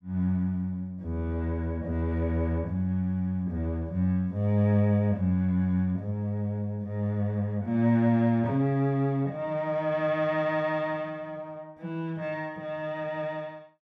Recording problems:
none

